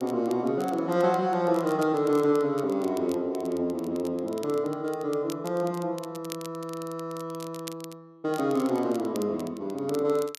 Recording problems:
crackling; vinyl, SNR 20 dB

